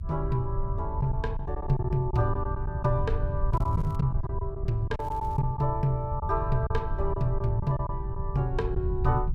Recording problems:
low-frequency rumble; below 98 Hz, SNR 2 dB
packet loss; 7% of the sound replaced, filled with silence
crackling; at 3.5 s and at 5 s; loose cable, SNR 30 dB

